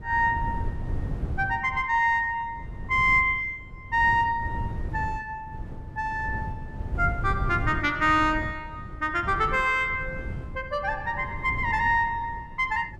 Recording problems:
wind noise; below 140 Hz, SNR 11 dB

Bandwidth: 13 kHz